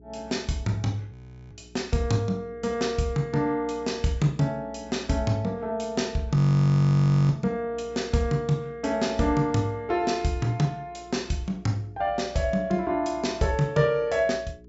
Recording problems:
treble missing; nothing above 8 kHz
hum; 60 Hz, harmonics up to 420 Hz, SNR 25 dB
audio freezing; at 1 s and at 6.5 s for 1 s

